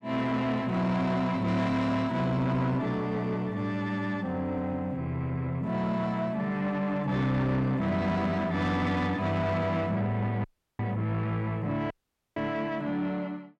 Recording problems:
distortion; soft clipping, signal-to-distortion ratio 11 dB
audio cutting out; at 10 s and at 12 s

